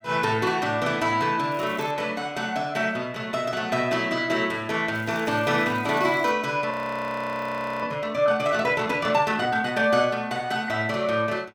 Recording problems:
crackle; at 1.5 s and from 5 to 6.5 s; loose cable, SNR 26 dB
frozen audio; at 6.5 s for 1 s

